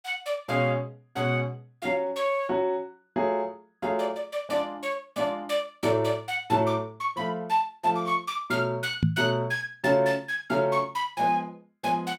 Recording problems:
microphone bump; at 9 s; peak +8 dB vs average level

